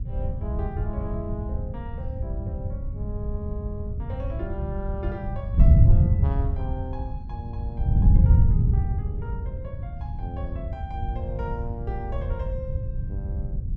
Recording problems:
wind noise; below 110 Hz, SNR -11 dB

